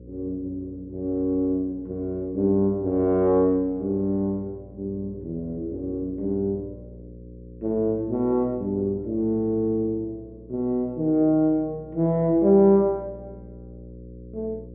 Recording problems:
low-pass filter; nothing above 4 kHz
electrical hum; 60 Hz, harmonics up to 540 Hz, SNR 20 dB

